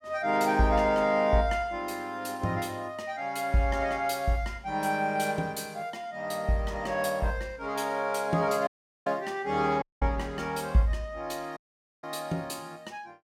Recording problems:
dropout; at 8.5 s, at 10 s and at 12 s

